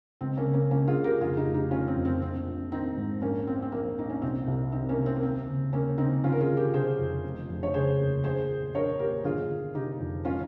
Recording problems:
none

